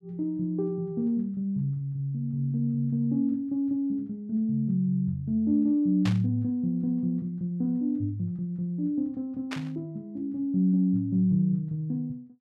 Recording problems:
static burst; at 6 s and at 9.5 s; peak -4 dB vs average level

